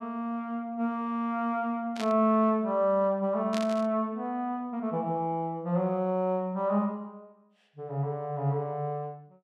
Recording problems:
static burst; at 2 s and at 3.5 s; peak -4 dB vs average level

